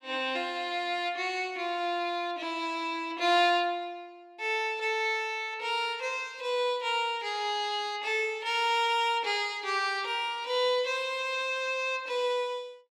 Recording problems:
none

